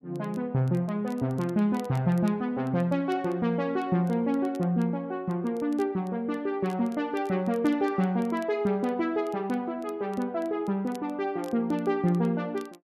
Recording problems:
crackle; vinyl, SNR 28 dB

